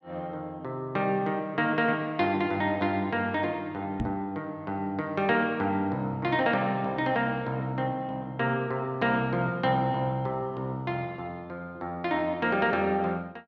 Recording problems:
microphone bump; at 4 s; peak 0 dB vs average level

